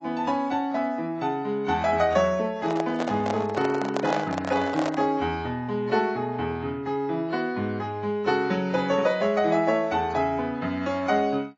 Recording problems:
codec artefacts; AAC, log-spectral distance 2 dB
microphone handling noise; from 2.5 to 5 s; peak +3 dB vs average level

